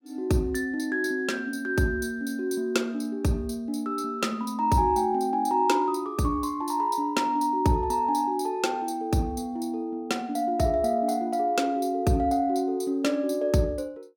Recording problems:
none

